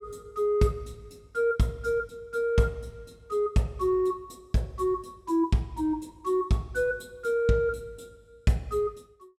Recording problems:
none

